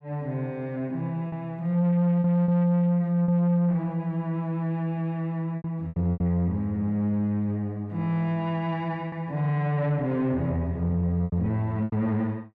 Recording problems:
distorted audio; soft clipping, signal-to-distortion ratio 11 dB
lost packets; 5% of the sound replaced, filled with repeated pitch periods

